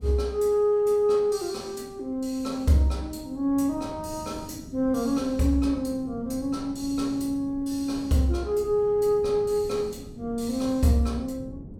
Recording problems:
wind on the microphone; below 250 Hz, SNR 18 dB

